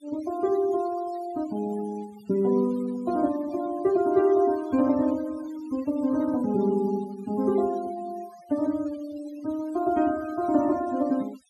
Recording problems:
denoising artefacts; signal-to-artefact ratio 19 dB

